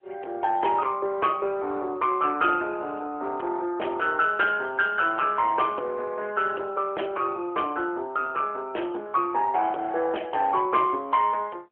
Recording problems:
telephone audio; 300 Hz to 3.2 kHz, AMR-NB
distorted audio; soft clipping, signal-to-distortion ratio 12 dB

